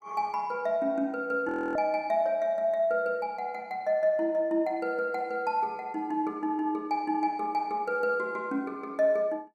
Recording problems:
frozen audio; at 1.5 s

